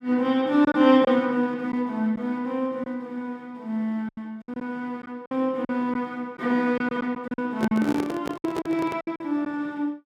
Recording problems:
lost packets; 8% of the sound replaced, filled with silence
microphone handling noise; from 7.5 to 9 s; peak +1 dB vs average level

